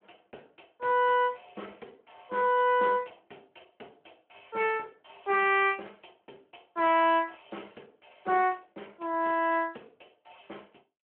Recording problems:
telephone audio; 260 Hz to 3.3 kHz, Speex

